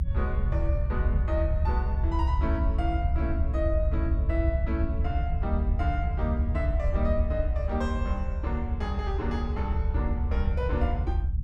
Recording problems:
rumble; below 78 Hz, SNR -5 dB

